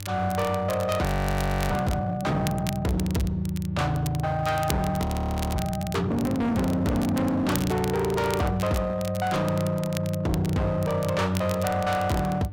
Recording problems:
distorted audio; hard clipping, uneven, signal-to-distortion ratio 7 dB
electrical hum; 50 Hz, harmonics up to 600 Hz, SNR 13 dB
crackle; vinyl, SNR 14 dB
frozen audio; at 1 s for 0.5 s and at 5 s for 0.5 s

